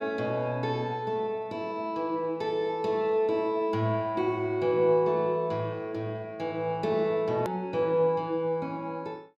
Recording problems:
edit click; at 7.5 s

